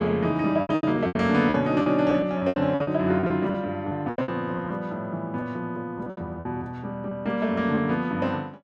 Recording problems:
packet loss; 12% of the sound replaced, filled with repeated pitch periods

